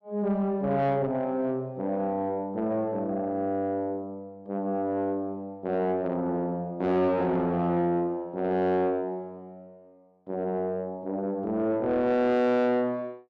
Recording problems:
distorted audio; soft clipping, signal-to-distortion ratio 10 dB

